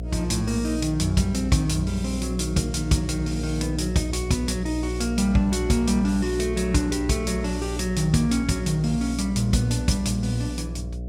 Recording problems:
electrical hum; 60 Hz, harmonics up to 660 Hz, SNR 7 dB

